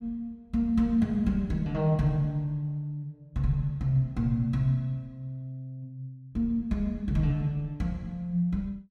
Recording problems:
none

